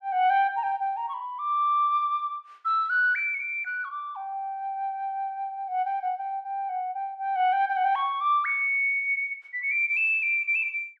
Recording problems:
none

